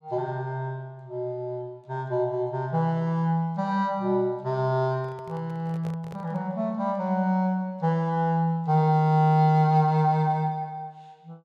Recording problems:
handling noise; from 5 to 6.5 s; peak -12 dB vs average level

